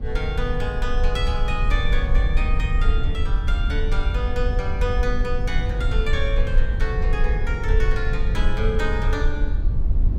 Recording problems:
low-frequency rumble; below 58 Hz, SNR -4 dB

